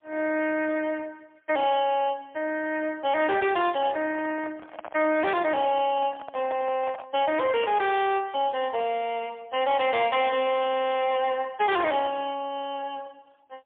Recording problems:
phone line; 280 Hz to 3.4 kHz, AMR-NB, then MP3
distortion; hard clipping, signal-to-distortion ratio 11 dB
microphone handling noise; from 4 to 8 s; peak -6 dB vs average level

